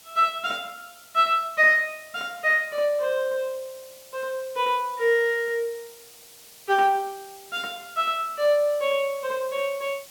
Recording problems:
hiss; SNR 22 dB

